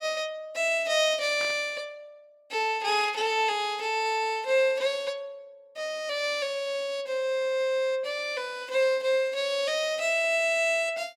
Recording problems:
burst of static; at 1.5 s; peak -8 dB vs average level

